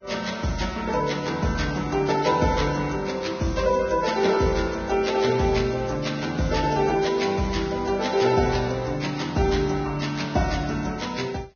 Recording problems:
lossy codec; Vorbis, log-spectral distance 5 dB, nothing above 6.5 kHz

